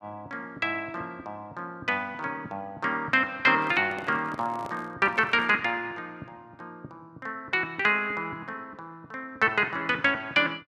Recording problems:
handling noise; from 3.5 to 5.5 s; peak -11 dB vs average level

